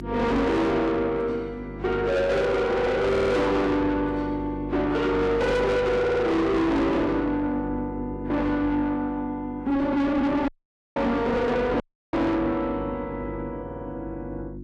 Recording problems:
lossy compression; Vorbis, log-spectral distance 2 dB, nothing above 12.3 kHz
distorted audio; soft clipping, signal-to-distortion ratio 6 dB
mains hum; 50 Hz, harmonics up to 350 Hz, SNR 12 dB
audio stuttering; at 3 s, at 6 s and at 14 s
audio cutting out; at 10 s and at 12 s

